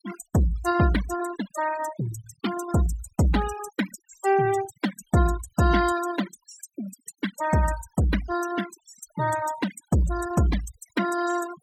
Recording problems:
denoising artefacts; signal-to-artefact ratio 12 dB

